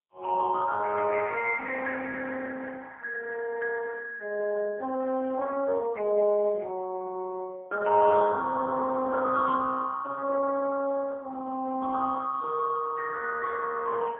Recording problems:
telephone audio; 220 Hz to 2.1 kHz, AMR-NB, then MP3

